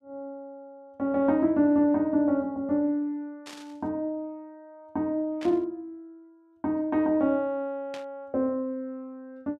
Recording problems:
static burst; at 3.5 s, at 5.5 s and at 8 s; peak -11 dB vs average level

